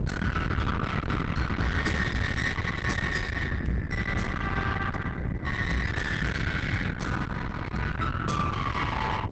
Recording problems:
lossy codec; Opus, log-spectral distance 3 dB, nothing above 7.8 kHz
distortion; soft clipping, signal-to-distortion ratio 6 dB
rumble; below 1.3 kHz, SNR 2 dB

